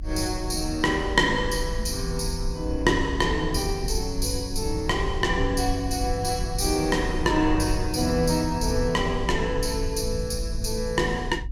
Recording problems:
low-frequency rumble; below 66 Hz, SNR 8 dB

